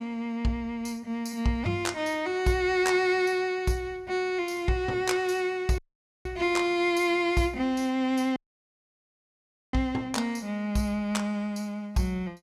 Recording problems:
dropout; at 6 s and at 8.5 s for 1.5 s

